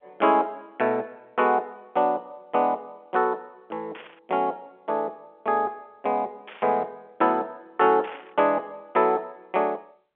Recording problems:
telephone audio; 280 Hz to 3.5 kHz, G.711
burst of static; at 4 s, at 6.5 s and at 8 s; peak -11 dB vs average level

